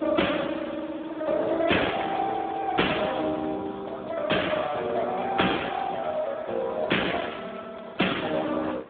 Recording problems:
telephone audio; 240 Hz to 3.6 kHz, Speex
wind noise; below 980 Hz, SNR 17 dB

